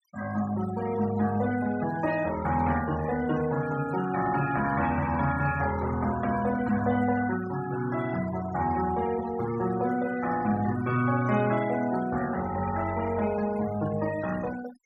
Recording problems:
denoising artefacts; signal-to-artefact ratio 14 dB

